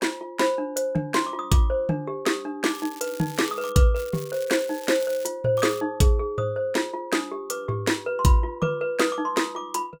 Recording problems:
crackle; from 2.5 to 3.5 s, from 4 to 5.5 s and at 5.5 s; loose cable, SNR 17 dB

